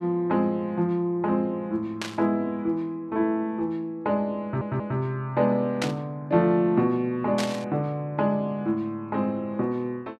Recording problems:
burst of static; at 2 s, at 6 s and at 7.5 s; peak +1 dB vs average level
audio stuttering; at 4.5 s

